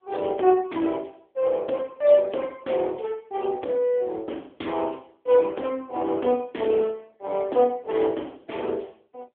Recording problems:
phone line; 240 Hz to 3.5 kHz, AMR-NB

